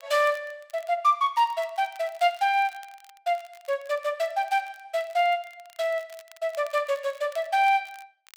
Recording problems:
crackling; vinyl, SNR 27 dB

